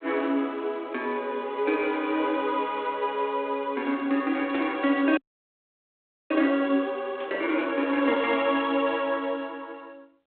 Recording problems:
telephone audio; 240 Hz to 3.8 kHz, G.726
static burst; at 4.5 s, at 7 s and at 8 s; peak -12 dB vs average level
audio freezing; at 5 s for 1 s

